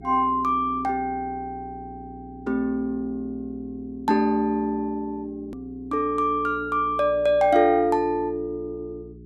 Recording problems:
hum; 60 Hz, harmonics up to 420 Hz, SNR 20 dB
edit click; at 5.5 s

